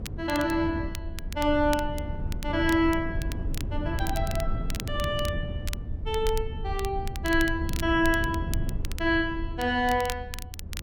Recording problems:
low-frequency rumble; below 80 Hz, SNR 8 dB
wind on the microphone; below 200 Hz, SNR 10 dB
crackle; vinyl, SNR 14 dB

